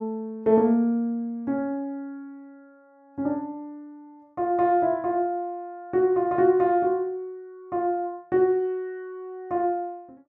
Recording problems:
none

